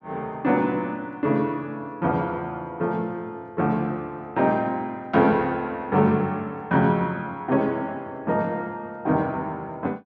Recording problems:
treble cut off; nothing above 8 kHz

